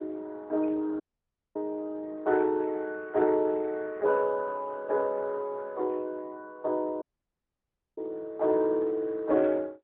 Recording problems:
phone line; 240 Hz to 2.2 kHz, AMR-NB
audio cutting out; at 1 s for 0.5 s and at 7 s for 1 s

